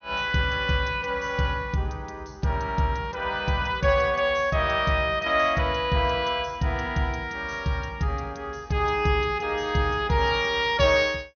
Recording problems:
treble cut off; nothing above 6.3 kHz

